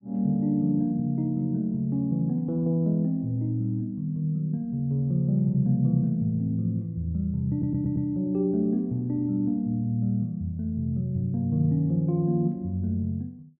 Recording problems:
stutter; at 7.5 s

